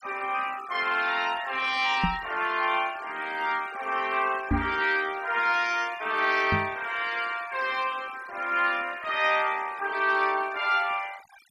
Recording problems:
noise reduction artefacts; signal-to-artefact ratio 18 dB
knock on the microphone; at 2 s, at 4.5 s and at 6.5 s; peak +4 dB vs average level

